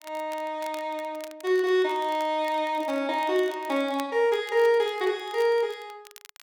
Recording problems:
crackling; vinyl, SNR 23 dB

